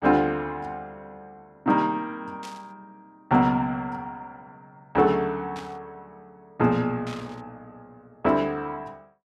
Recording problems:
static burst; at 2.5 s, at 5.5 s and at 7 s; peak -11 dB vs average level

